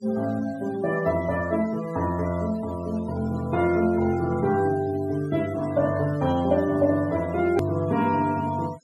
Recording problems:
denoising artefacts; signal-to-artefact ratio 21 dB
click at an edit; at 7.5 s

